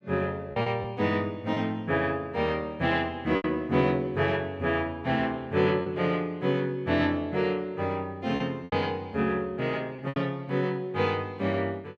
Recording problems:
lost packets; 4% of the sound replaced, filled with repeated pitch periods

